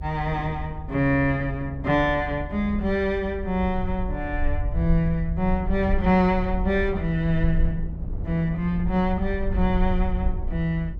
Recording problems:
rumble; below 70 Hz, SNR 6 dB
wind on the microphone; below 290 Hz, SNR 17 dB

